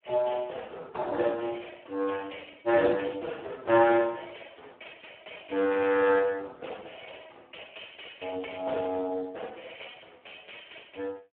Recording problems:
phone line; 300 Hz to 3.3 kHz, Speex

